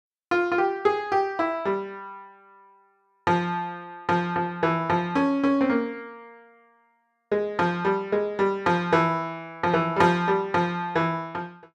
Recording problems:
none

